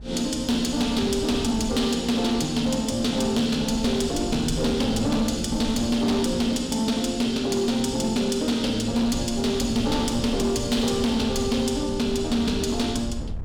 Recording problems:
distorted audio; hard clipping, signal-to-distortion ratio 12 dB
wind on the microphone; below 130 Hz, SNR 13 dB

